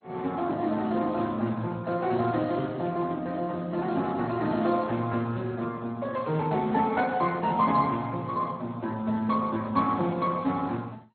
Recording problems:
lossy compression; Speex, then MP2, log-spectral distance 3 dB, nothing above 4.2 kHz

